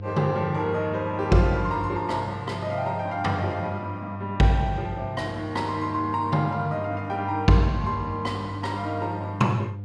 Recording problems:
electrical hum; 50 Hz, harmonics up to 500 Hz, SNR 11 dB

